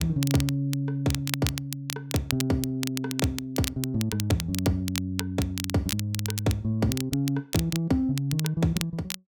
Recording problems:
crackle; vinyl, SNR 7 dB

